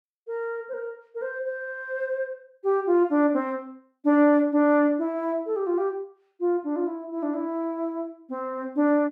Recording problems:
none

